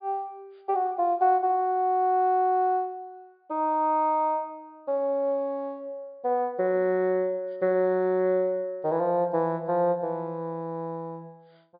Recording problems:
treble cut off; nothing above 4.8 kHz

